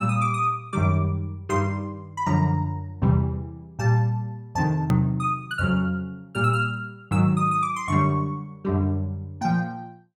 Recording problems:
edit click; at 5 s

